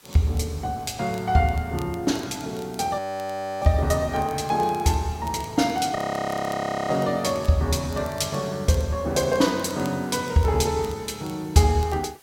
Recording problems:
background hiss; slope -1 dB per octave, SNR 27 dB
crackle; vinyl, SNR 25 dB
frozen audio; at 3 s for 0.5 s and at 6 s for 1 s

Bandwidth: 16.5 kHz